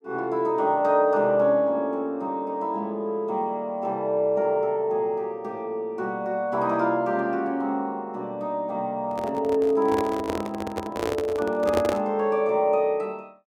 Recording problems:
microphone handling noise; from 9 to 12 s; peak +3 dB vs average level

